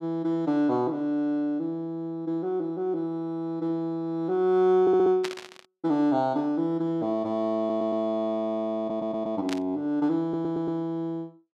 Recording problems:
audio stuttering; 4 times, first at 5 s
static burst; at 5 s and at 9.5 s; peak -2 dB vs average level

